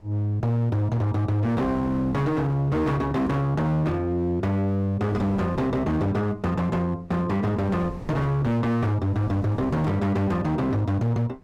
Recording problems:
distortion; hard clipping, uneven, signal-to-distortion ratio 8 dB
wind on the microphone; below 390 Hz, SNR 20 dB

